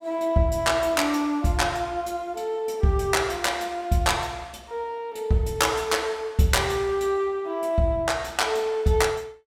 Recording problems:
none

